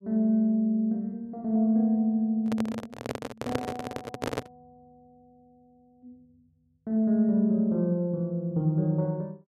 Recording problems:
handling noise; from 2.5 to 4.5 s; peak +1 dB vs average level

